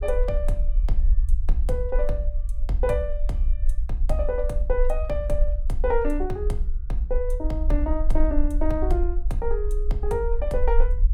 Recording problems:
low-frequency rumble; below 44 Hz, SNR -1 dB

